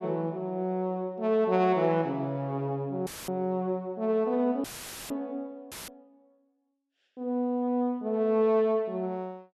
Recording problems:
audio cutting out; at 3 s, at 4.5 s and at 5.5 s; filled with static

